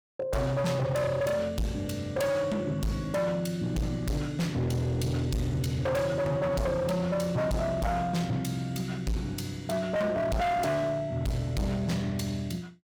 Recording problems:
distortion; hard clipping, signal-to-distortion ratio 7 dB

